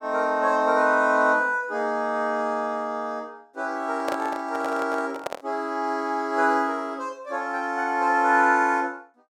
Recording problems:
microphone handling noise; from 4 to 5.5 s; peak -1 dB vs average level

